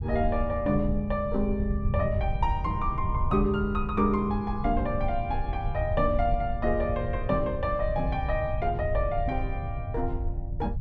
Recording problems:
low-frequency rumble; below 92 Hz, SNR 4 dB

